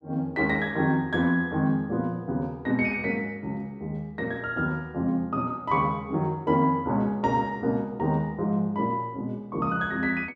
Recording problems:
none

